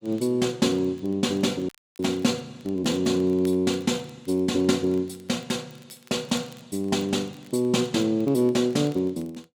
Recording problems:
crackle; vinyl, SNR 29 dB
audio cutting out; at 1.5 s

